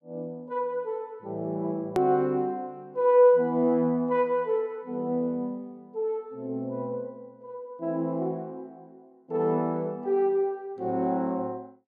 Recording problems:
click at an edit; at 2 s

